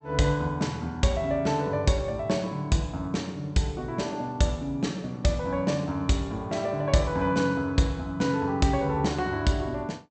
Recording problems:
low-pass filter; nothing above 8 kHz

